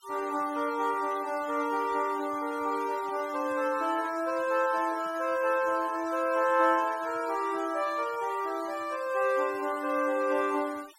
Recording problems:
denoising artefacts; signal-to-artefact ratio 19 dB

